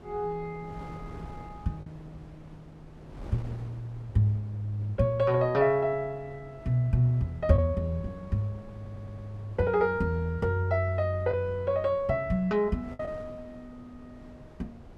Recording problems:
wind on the microphone; below 370 Hz, SNR 20 dB
lost packets; 1.2% of the sound replaced, filled with the last packet
audio stuttering; at 9 s

